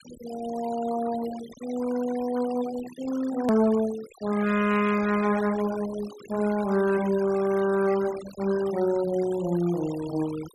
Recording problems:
denoising artefacts; signal-to-artefact ratio 15 dB
edit click; at 3.5 s

